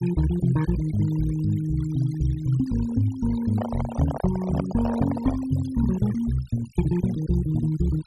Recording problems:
noise reduction artefacts; signal-to-artefact ratio 17 dB
microphone handling noise; from 3.5 to 5.5 s; peak -3 dB vs average level

